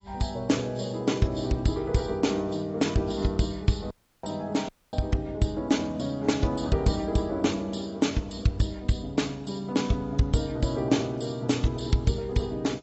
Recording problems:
lossy codec; AAC, log-spectral distance 4 dB, nothing above 7.8 kHz
dropout; at 4 s and at 4.5 s

